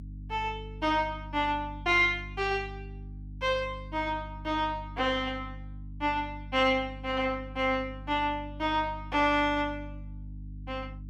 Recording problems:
hum; 50 Hz, harmonics up to 300 Hz, SNR 14 dB

